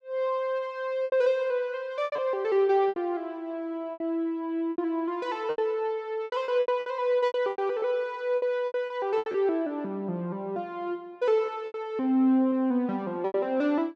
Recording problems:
packet loss; 10% of the sound replaced, filled with repeated pitch periods

